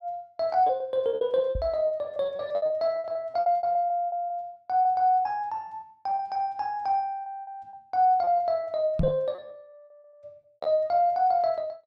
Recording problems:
packet loss; 16% of the sound replaced, filled with repeated pitch periods
microphone bump; at 1.5 s and at 9 s; peak +3 dB vs average level

